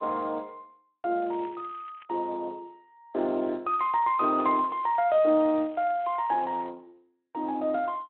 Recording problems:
phone line; 280 Hz to 3.8 kHz, Speex
crackling; at 1 s and from 3.5 to 6.5 s; loose cable, SNR 27 dB

